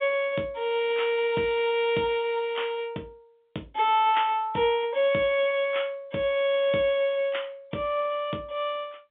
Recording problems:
telephone audio; 190 Hz to 3.7 kHz, G.711

